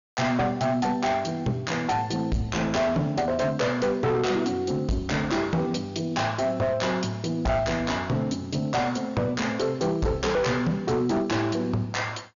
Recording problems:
treble cut off; nothing above 7 kHz
distortion; hard clipping, signal-to-distortion ratio 8 dB

